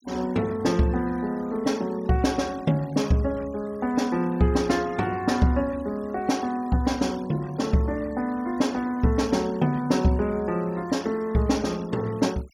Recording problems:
denoising artefacts; signal-to-artefact ratio 24 dB

